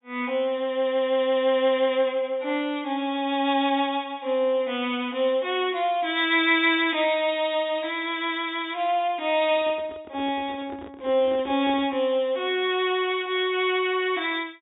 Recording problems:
low-pass filter; nothing above 4 kHz
handling noise; from 9.5 to 12 s; peak -12 dB vs average level

